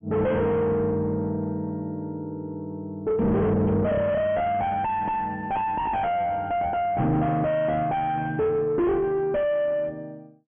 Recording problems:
low-pass filter; nothing above 3.3 kHz
distorted audio; soft clipping, signal-to-distortion ratio 5 dB

